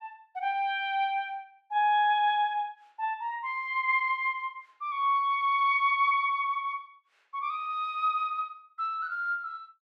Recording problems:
none

